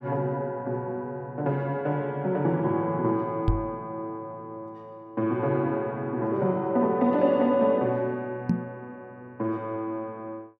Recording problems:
microphone thump; at 3.5 s and at 8.5 s; peak +6 dB vs average level

